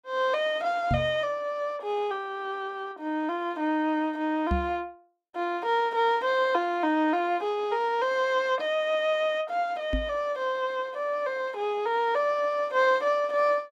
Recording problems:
microphone thump; at 1 s, at 4.5 s and at 10 s; peak +2 dB vs average level

